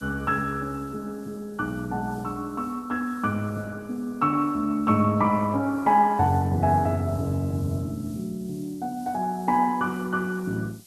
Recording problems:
lossy compression; Opus, log-spectral distance 2 dB
background hiss; SNR 26 dB

